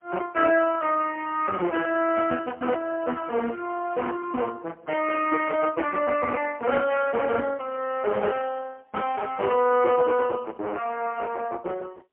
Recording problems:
phone line; 280 Hz to 3 kHz, AMR-NB, then MP3

